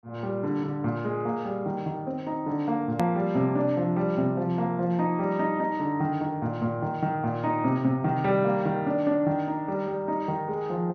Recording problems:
treble cut off; nothing above 6.4 kHz
hard cut with a click; at 3 s

